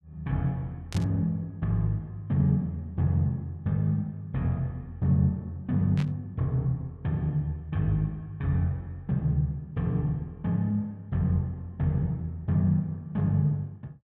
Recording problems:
burst of static; at 1 s and at 6 s; peak -8 dB vs average level

